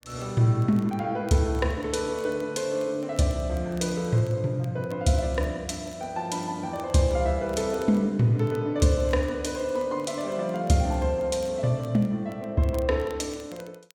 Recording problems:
crackling; vinyl, SNR 29 dB

